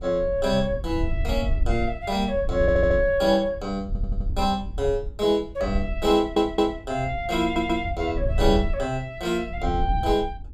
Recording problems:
wind noise; below 74 Hz, SNR 7 dB
audio stuttering; 4 times, first at 2.5 s

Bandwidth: 14.5 kHz